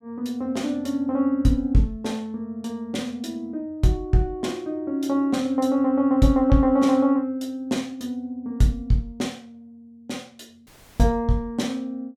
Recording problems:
audio cutting out; at 11 s

